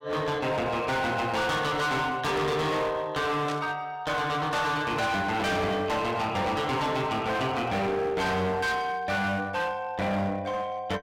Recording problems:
distorted audio; hard clipping, uneven, signal-to-distortion ratio 7 dB
static burst; at 3.5 s; peak -6 dB vs average level

